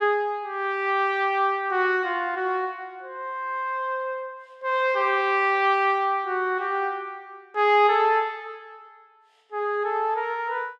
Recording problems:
none

